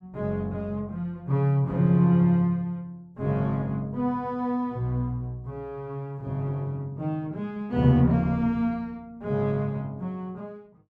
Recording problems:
none

